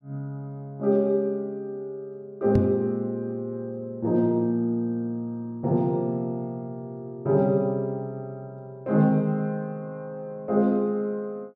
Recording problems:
microphone bump; at 2.5 s; peak +6 dB vs average level

